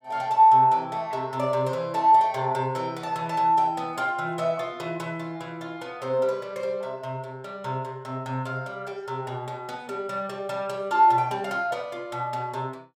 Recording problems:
none

